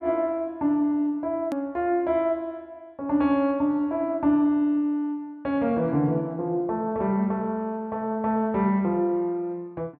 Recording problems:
edit click; at 1.5 s

